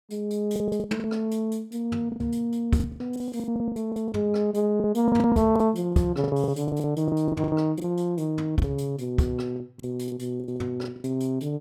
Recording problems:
lost packets; 15% of the sound replaced, filled with the last packet

